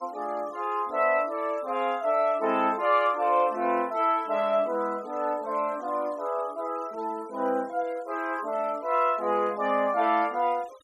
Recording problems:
denoising artefacts; signal-to-artefact ratio 26 dB

